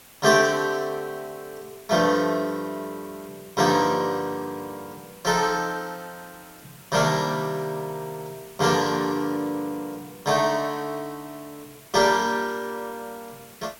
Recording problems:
hiss; slope -2 dB per octave, SNR 22 dB

